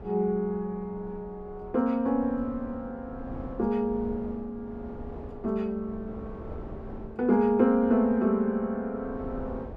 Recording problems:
wind on the microphone; below 400 Hz, SNR 16 dB

